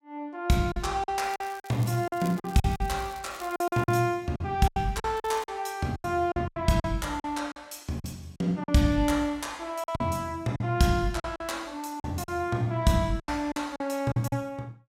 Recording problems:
lost packets; 11% of the sound replaced, filled with silence
crackling; from 1 to 4 s and at 5 s; loose cable, SNR 21 dB

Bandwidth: 16.5 kHz